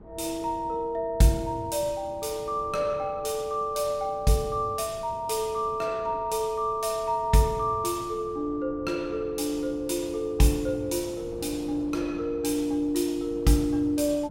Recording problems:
wind noise; below 400 Hz, SNR 19 dB

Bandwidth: 17 kHz